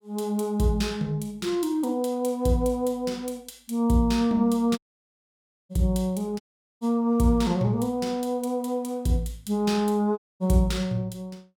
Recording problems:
audio cutting out; at 5 s for 1 s, at 6.5 s and at 10 s

